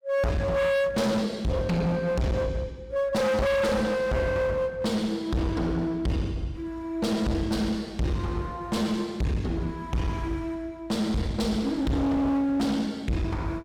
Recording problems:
distortion; hard clipping, uneven, signal-to-distortion ratio 5 dB

